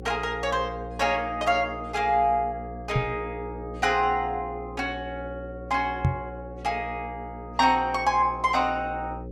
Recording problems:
electrical hum; 60 Hz, harmonics up to 540 Hz, SNR 14 dB
microphone bump; at 3 s and at 6 s; peak +6 dB vs average level

